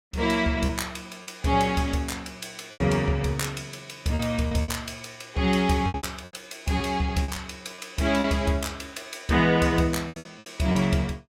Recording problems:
lost packets; 8% of the sound replaced, filled with repeated pitch periods

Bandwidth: 16 kHz